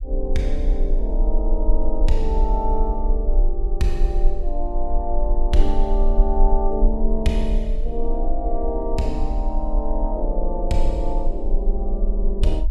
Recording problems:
low-frequency rumble; below 38 Hz, strongest tone 22 Hz, SNR -2 dB

